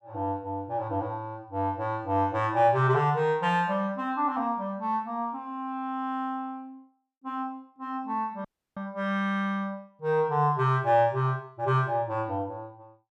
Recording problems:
audio cutting out; at 8.5 s

